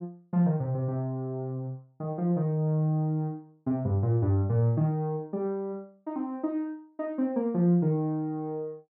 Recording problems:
none

